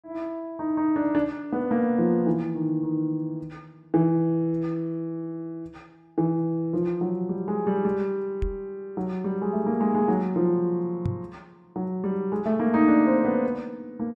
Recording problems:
microphone thump; at 8.5 s and at 11 s; peak +1 dB vs average level

